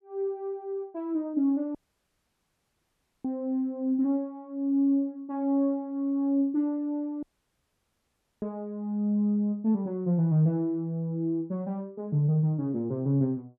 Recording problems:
dropout; at 2 s for 1.5 s and at 7 s for 1 s

